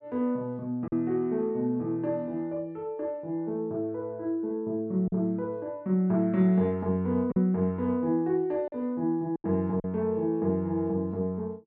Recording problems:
packet loss; 2% of the sound replaced, filled with silence

